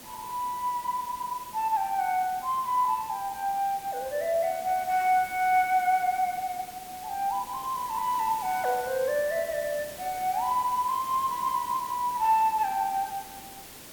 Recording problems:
hiss; slope -2 dB per octave, SNR 15 dB

